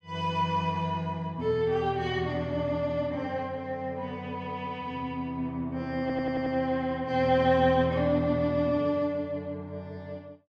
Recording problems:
stutter; at 6 s

